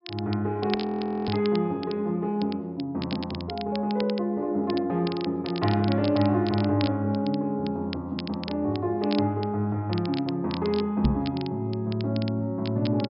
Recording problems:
treble cut off; nothing above 5.5 kHz
crackling; vinyl, SNR 14 dB
audio freezing; at 1 s for 0.5 s
microphone thump; at 11 s; peak +7 dB vs average level

